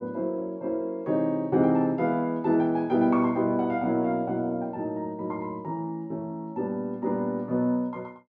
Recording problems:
none

